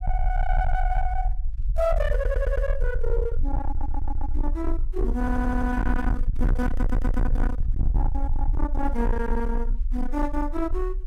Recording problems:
distorted audio; soft clipping, signal-to-distortion ratio 7 dB
rumble; below 48 Hz, SNR -1 dB
audio stuttering; 4 times, first at 2 s

